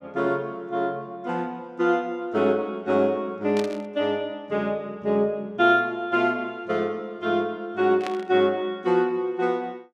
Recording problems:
static burst; at 3.5 s and at 8 s; peak -5 dB vs average level

